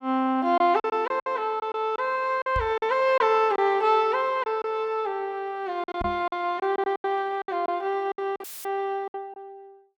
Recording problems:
packet loss; 10% of the sound replaced, filled with silence
knock on the microphone; at 2.5 s and at 6 s; peak -3 dB vs average level
dropout; at 8.5 s; filled with static

